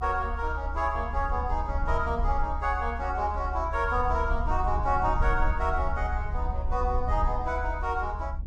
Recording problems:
low-frequency rumble; below 68 Hz, SNR 3 dB

